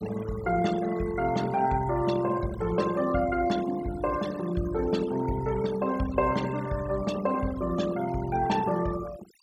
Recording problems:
noise reduction artefacts; signal-to-artefact ratio 16 dB

